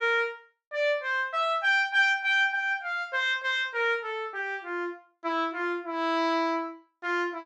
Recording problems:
none

